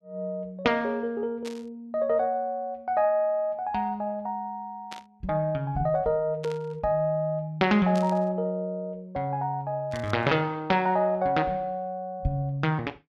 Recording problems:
burst of static; 5 times, first at 1.5 s; peak -9 dB vs average level

